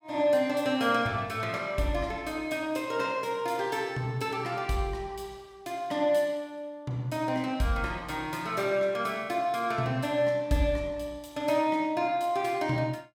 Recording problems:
none

